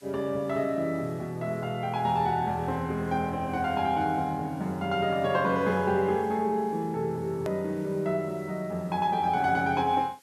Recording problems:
background hiss; SNR 29 dB
edit click; at 7.5 s

